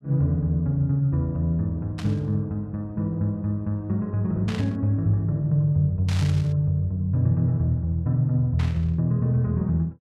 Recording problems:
static burst; 4 times, first at 2 s; peak -8 dB vs average level

